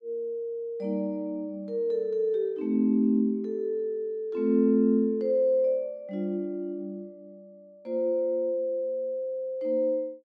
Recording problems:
none

